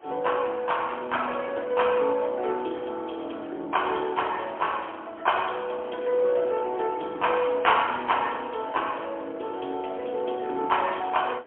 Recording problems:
telephone audio; 240 Hz to 3.3 kHz, AMR-NB, then MP3
wind on the microphone; below 1.5 kHz, SNR 21 dB

